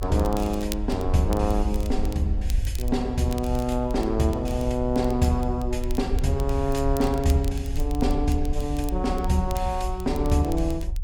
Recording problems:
rumble; below 60 Hz, SNR 5 dB
crackling; vinyl, SNR 19 dB

